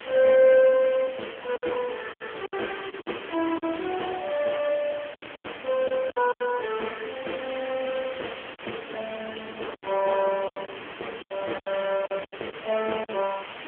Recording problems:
phone line; 260 Hz to 3.3 kHz, AMR-NB
background hiss; SNR 14 dB
wind on the microphone; below 830 Hz, SNR 21 dB
lost packets; 9% of the sound replaced, filled with silence

